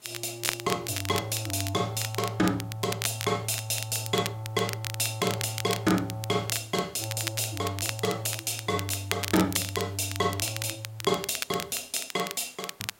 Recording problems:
background hiss; slope -3 dB per octave, SNR 27 dB
crackling; vinyl, SNR 7 dB

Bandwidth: 16 kHz